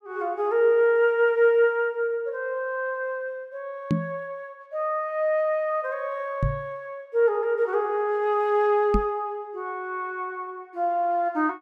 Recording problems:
microphone bump; at 4 s, at 6.5 s and at 9 s; peak +4 dB vs average level

